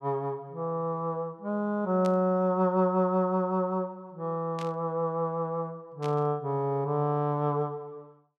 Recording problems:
static burst; at 2 s, at 4.5 s and at 6 s; peak -10 dB vs average level

